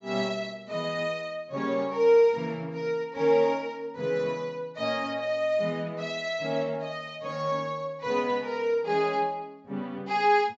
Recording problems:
low-pass filter; nothing above 7.7 kHz

